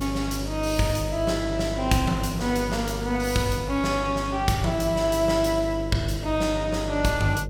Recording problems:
mains hum; 50 Hz, harmonics up to 600 Hz, SNR 9 dB

